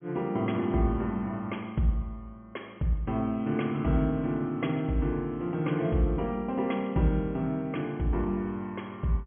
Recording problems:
low-pass filter; nothing above 3.3 kHz

